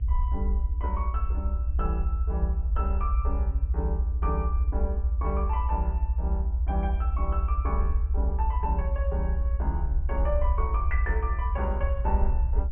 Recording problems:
treble missing; nothing above 3.2 kHz
rumble; below 70 Hz, strongest tone 56 Hz, SNR -7 dB

